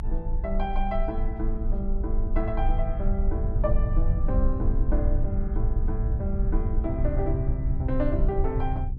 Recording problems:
mains hum; 60 Hz, harmonics up to 540 Hz, SNR 16 dB
rumble; below 56 Hz, strongest tone 26 Hz, SNR -3 dB

